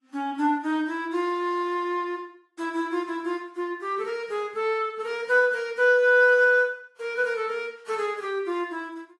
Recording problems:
lossy codec; AAC, log-spectral distance 2 dB

